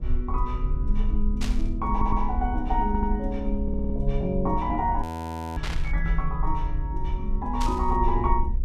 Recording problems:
electrical hum; 60 Hz, harmonics up to 600 Hz, SNR 21 dB
low-frequency rumble; below 54 Hz, SNR 1 dB
burst of static; at 1.5 s, at 5.5 s and at 7.5 s; peak -1 dB vs average level
stutter; at 2 s, at 3 s and at 3.5 s
audio freezing; at 5 s for 0.5 s

